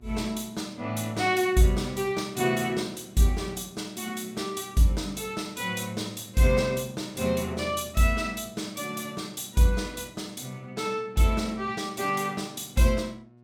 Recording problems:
hum; 60 Hz, harmonics up to 1.4 kHz, SNR 27 dB

